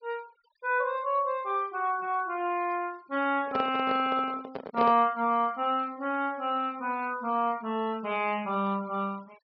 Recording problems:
treble missing; nothing above 5.5 kHz
denoising artefacts; signal-to-artefact ratio 26 dB
microphone handling noise; from 3.5 to 5 s; peak +1 dB vs average level

